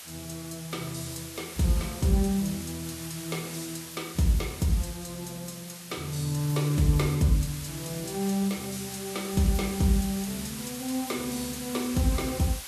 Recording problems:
lossy codec; Vorbis, log-spectral distance 10 dB, nothing above 13.5 kHz
background hiss; slope +2 dB per octave, SNR 10 dB

